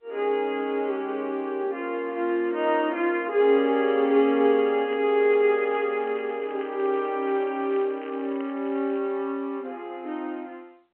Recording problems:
phone line; 240 Hz to 3.3 kHz, G.711
crackling; from 5 to 9 s; loose cable, SNR 26 dB

